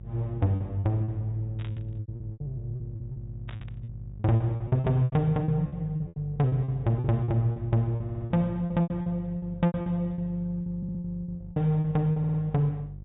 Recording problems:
treble cut off; nothing above 4 kHz
mains hum; 50 Hz, harmonics up to 400 Hz, SNR 15 dB
lost packets; 16% of the sound replaced, filled with repeated pitch periods
burst of static; at 1.5 s and at 3.5 s; peak -12 dB vs average level
stutter; at 8 s, at 11 s and at 12 s

